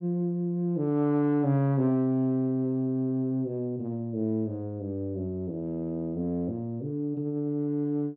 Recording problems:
none

